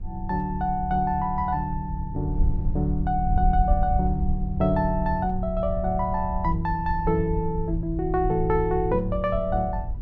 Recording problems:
wind noise; below 68 Hz, SNR 5 dB

